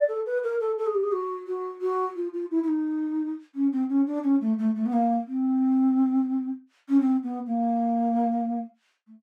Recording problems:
none

